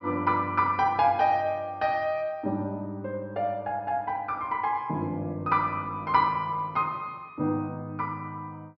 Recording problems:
treble missing; nothing above 5.8 kHz

